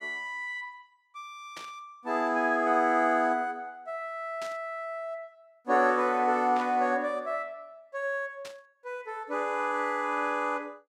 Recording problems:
static burst; 4 times, first at 1.5 s; peak -10 dB vs average level

